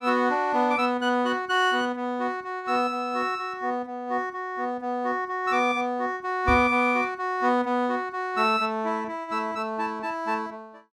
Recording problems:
microphone thump; at 6.5 s; peak +1 dB vs average level

